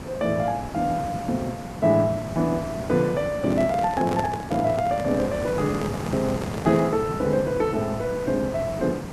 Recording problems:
background hiss; SNR 9 dB
microphone handling noise; from 3.5 to 7 s; peak -1 dB vs average level

